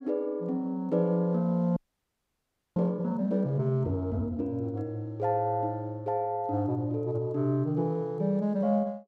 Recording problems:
audio freezing; at 2 s for 1 s

